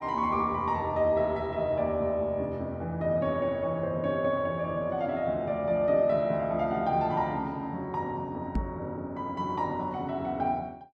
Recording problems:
microphone bump; at 8.5 s; peak +2 dB vs average level

